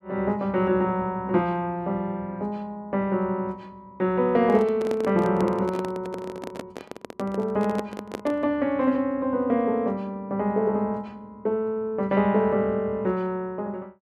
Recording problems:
handling noise; from 4.5 to 8.5 s; peak -3 dB vs average level

